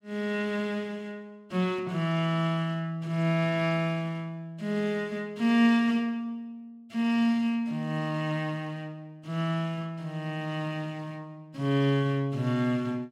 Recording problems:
none

